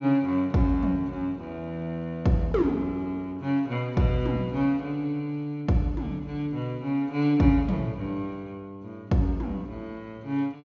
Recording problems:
treble cut off; nothing above 7.2 kHz

